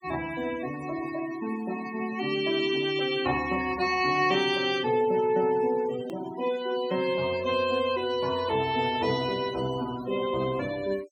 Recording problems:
denoising artefacts; signal-to-artefact ratio 13 dB
hard cut with a click; at 6 s

